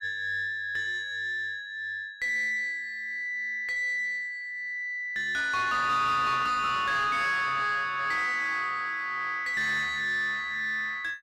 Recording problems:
distortion; soft clipping, signal-to-distortion ratio 10 dB

